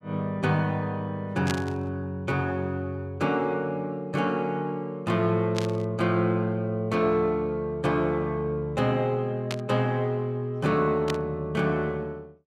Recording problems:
static burst; 4 times, first at 1.5 s; peak -1 dB vs average level

